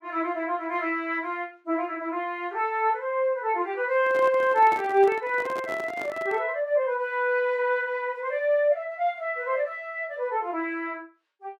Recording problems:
microphone handling noise; from 4 to 6.5 s; peak -6 dB vs average level

